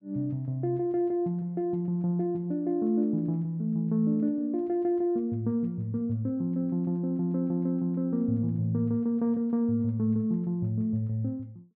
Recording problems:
none

